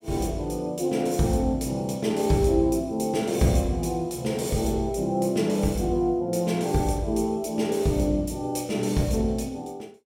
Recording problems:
none

